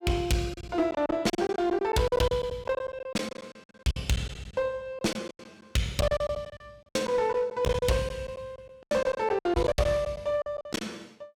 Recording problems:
distorted audio; hard clipping, uneven, signal-to-distortion ratio 10 dB
lost packets; 16% of the sound replaced, filled with silence

